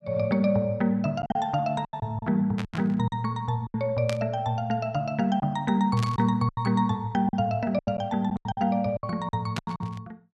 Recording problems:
lost packets; 10% of the sound replaced, filled with silence
burst of static; 4 times, first at 2.5 s; peak -3 dB vs average level

